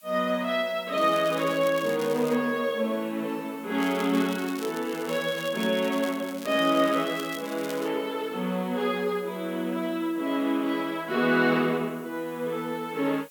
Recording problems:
hiss; SNR 25 dB
crackle; from 1 to 2.5 s and from 4 to 8 s; loose cable, SNR 16 dB

